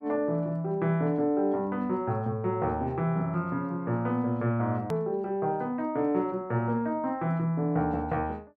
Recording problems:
hard cut with a click; at 5 s

